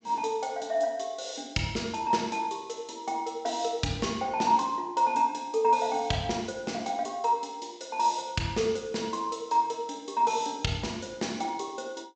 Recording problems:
treble missing; nothing above 8 kHz

